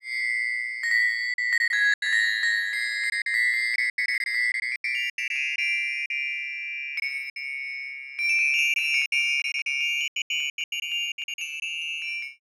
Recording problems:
packet loss; 11% of the sound replaced, filled with silence

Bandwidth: 14.5 kHz